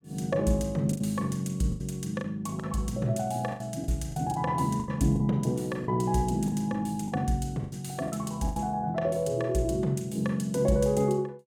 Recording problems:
lost packets; 8% of the sound replaced, filled with the last packet

